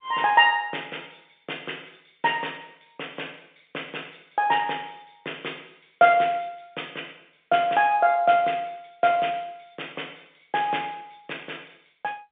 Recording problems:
telephone audio; 300 Hz to 3.6 kHz, G.711

